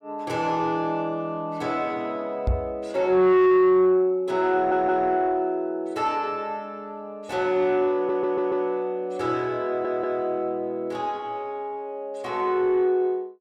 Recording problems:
distortion; soft clipping, signal-to-distortion ratio 7 dB
knock on the microphone; at 2.5 s; peak +3 dB vs average level
audio stuttering; at 4.5 s, at 8 s and at 9.5 s

